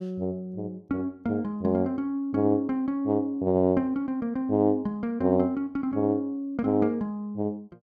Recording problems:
none

